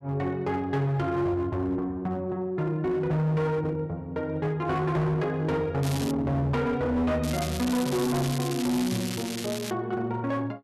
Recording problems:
distortion; hard clipping, signal-to-distortion ratio 10 dB
crackling; at 6 s and from 7 to 9.5 s; loose cable, SNR 9 dB

